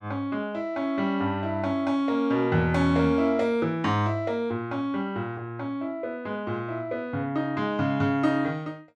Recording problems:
none

